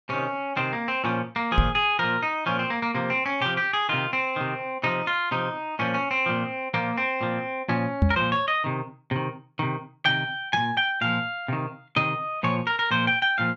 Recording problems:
knock on the microphone; at 1.5 s and at 8 s; peak +8 dB vs average level

